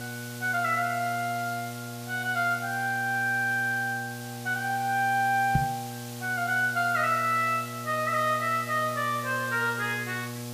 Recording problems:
hum; 60 Hz, harmonics up to 1.4 kHz, SNR 12 dB
background hiss; slope +2 dB per octave, SNR 14 dB
knock on the microphone; at 5.5 s; peak +6 dB vs average level

